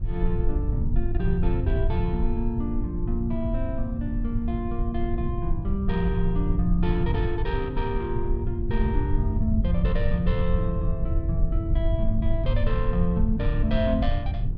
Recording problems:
rumble; below 88 Hz, SNR -2 dB

